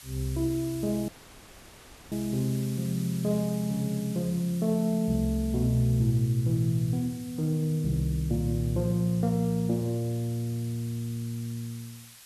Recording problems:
hiss; slope +3 dB per octave, SNR 18 dB
dropout; at 1 s for 1 s

